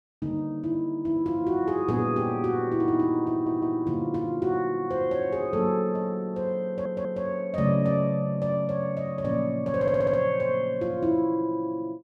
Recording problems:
audio stuttering; at 3.5 s, at 6.5 s and at 10 s

